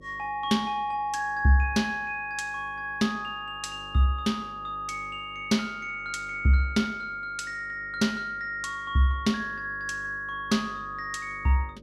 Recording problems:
hum; 50 Hz, harmonics up to 600 Hz, SNR 23 dB

